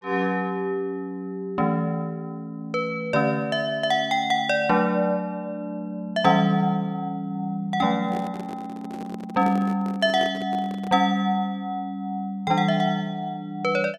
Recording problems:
handling noise; from 8 to 11 s; peak -6 dB vs average level

